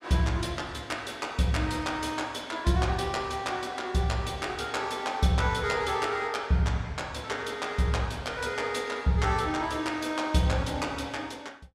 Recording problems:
none

